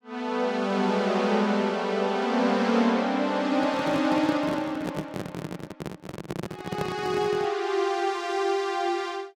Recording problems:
handling noise; from 3.5 to 7.5 s; peak -2 dB vs average level

